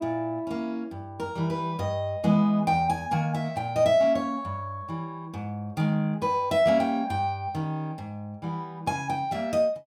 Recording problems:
none

